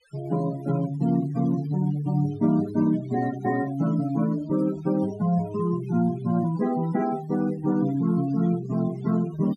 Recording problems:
noise reduction artefacts; signal-to-artefact ratio 17 dB

